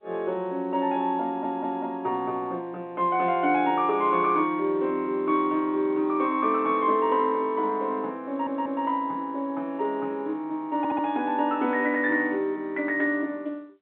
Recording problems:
phone line; 220 Hz to 3.6 kHz, G.711
audio stuttering; at 1.5 s, at 8.5 s and at 11 s

